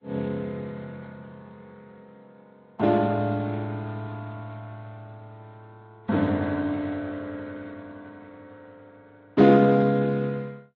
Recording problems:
lossy codec; Speex, then AAC, log-spectral distance 3 dB

